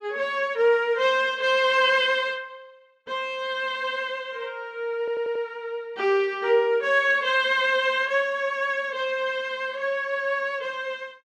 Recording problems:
stutter; at 5 s

